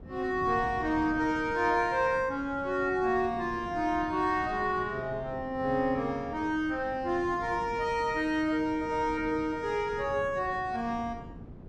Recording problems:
wind on the microphone; below 300 Hz, SNR 16 dB

